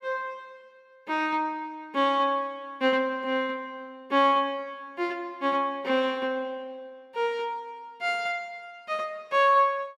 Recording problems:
none

